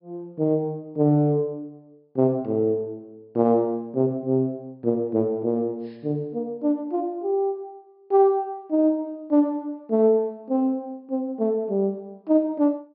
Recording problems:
treble missing; nothing above 5.5 kHz

